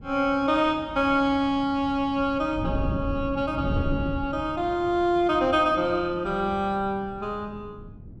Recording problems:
wind on the microphone; below 190 Hz, SNR 11 dB

